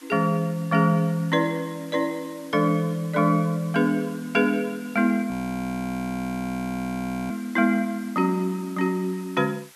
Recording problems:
hiss; slope +1 dB per octave, SNR 23 dB
frozen audio; at 5.5 s for 2 s

